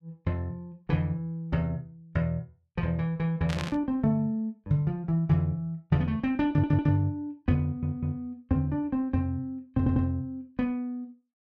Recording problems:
static burst; at 3.5 s; peak -4 dB vs average level
stutter; at 6.5 s, at 7.5 s and at 10 s

